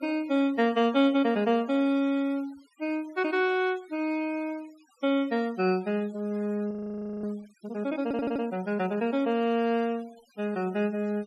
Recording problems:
denoising artefacts; signal-to-artefact ratio 25 dB
frozen audio; at 6.5 s for 0.5 s
stutter; at 8 s

